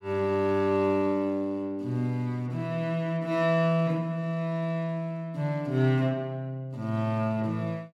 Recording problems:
none

